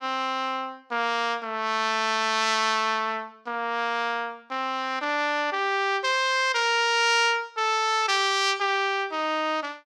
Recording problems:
none

